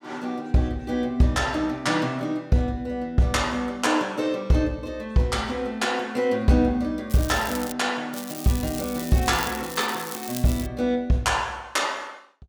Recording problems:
crackle; at 7 s and from 8 to 11 s; loose cable, SNR 11 dB

